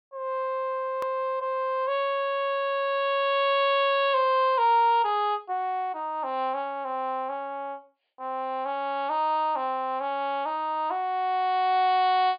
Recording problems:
treble cut off; nothing above 4.9 kHz
edit click; at 1 s

